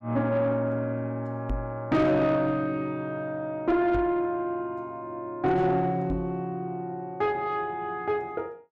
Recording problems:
distortion; soft clipping, signal-to-distortion ratio 11 dB
microphone bump; at 1.5 s, at 4 s and at 6 s; peak 0 dB vs average level

